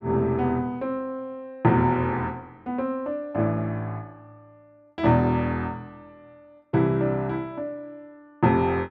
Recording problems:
none

